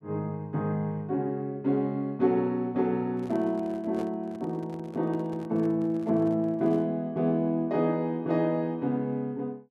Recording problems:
microphone handling noise; from 3 to 7 s; peak -10 dB vs average level

